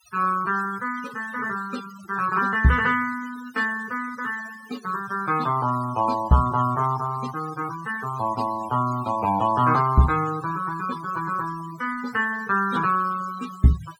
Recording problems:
denoising artefacts; signal-to-artefact ratio 16 dB

